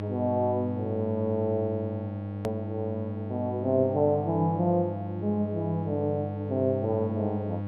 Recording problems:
hum; 50 Hz, harmonics up to 1.1 kHz, SNR 6 dB
hard cut with a click; at 2.5 s

